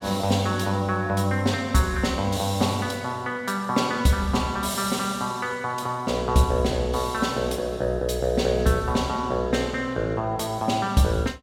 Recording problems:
none

